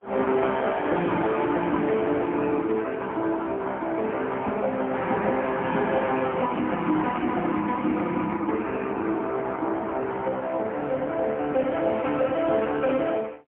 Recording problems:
phone line; 190 Hz to 3.4 kHz, AMR-NB, then MP3

